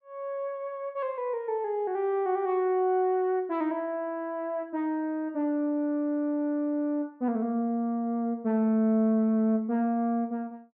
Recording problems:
none

